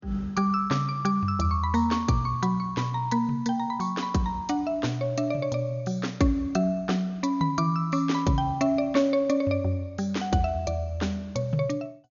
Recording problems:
low-pass filter; nothing above 6.8 kHz

